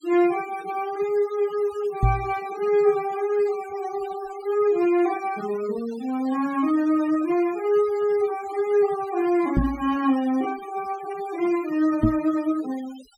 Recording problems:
denoising artefacts; signal-to-artefact ratio 19 dB
microphone thump; at 2 s, at 9.5 s and at 12 s; peak +6 dB vs average level

